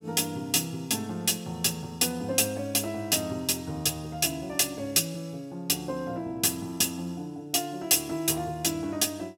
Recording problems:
none

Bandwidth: 16.5 kHz